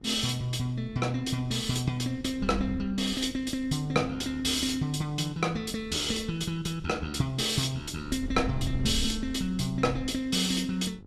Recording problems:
hum; 50 Hz, harmonics up to 1 kHz, SNR 24 dB
wind on the microphone; below 94 Hz, SNR 13 dB

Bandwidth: 13.5 kHz